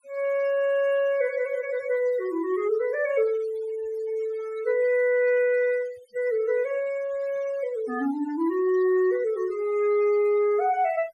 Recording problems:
noise reduction artefacts; signal-to-artefact ratio 22 dB

